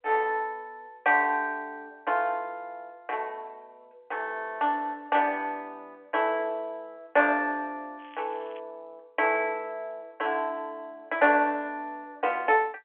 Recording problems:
phone line; 240 Hz to 3.5 kHz, G.711
crackle; at 8 s; loose cable, SNR 27 dB

